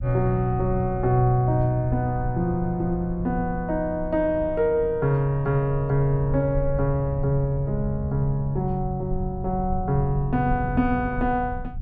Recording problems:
rumble; below 94 Hz, SNR 10 dB

